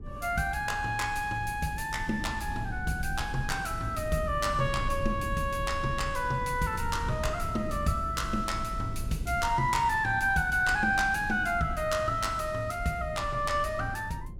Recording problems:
rumble; below 110 Hz, SNR 10 dB

